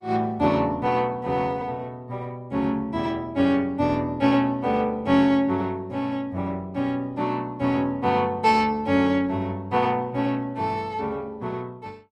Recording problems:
codec artefacts; Opus, log-spectral distance 2 dB

